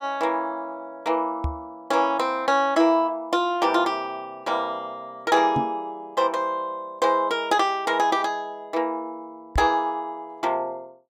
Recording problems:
knock on the microphone; at 1.5 s, at 5.5 s and at 9.5 s; peak +1 dB vs average level

